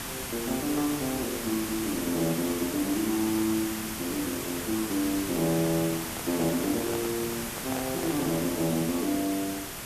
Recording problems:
hiss; slope -2 dB per octave, SNR 4 dB
microphone handling noise; from 6 to 8.5 s; peak -4 dB vs average level

